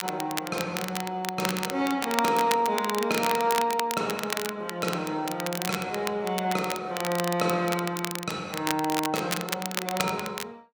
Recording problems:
crackling; vinyl, SNR 6 dB

